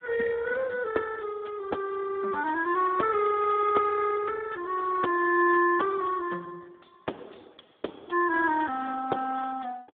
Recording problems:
telephone audio; 280 Hz to 3.4 kHz, Speex

